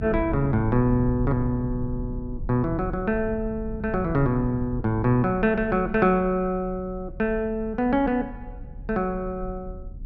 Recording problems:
treble missing; nothing above 8 kHz
rumble; below 100 Hz, SNR 11 dB

